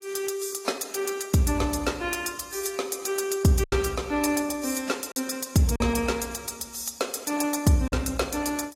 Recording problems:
codec artefacts; AAC, log-spectral distance 5 dB, nothing above 14.7 kHz
lost packets; 2% of the sound replaced, filled with silence

